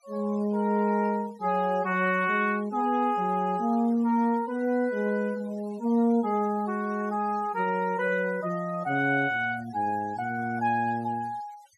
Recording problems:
noise reduction artefacts; signal-to-artefact ratio 25 dB

